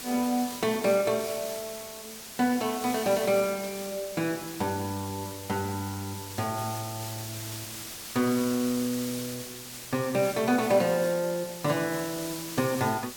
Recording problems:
background hiss; slope 0 dB per octave, SNR 9 dB

